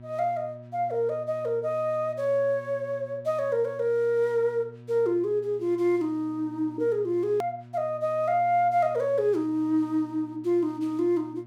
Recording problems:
mains hum; 60 Hz, harmonics up to 960 Hz, SNR 20 dB
hard cut with a click; at 7.5 s

